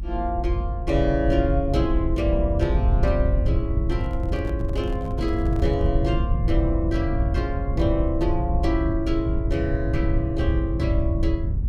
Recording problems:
hum; 50 Hz, harmonics up to 900 Hz, SNR 21 dB
rumble; below 94 Hz, SNR -1 dB
handling noise; from 4 to 6 s; peak -11 dB vs average level

